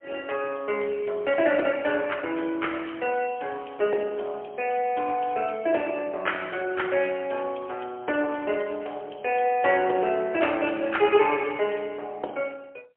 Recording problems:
telephone audio; 300 Hz to 3.2 kHz, AMR-NB, then MP3

